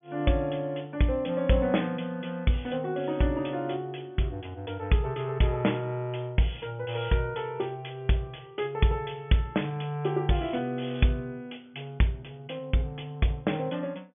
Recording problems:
low-pass filter; nothing above 3.5 kHz

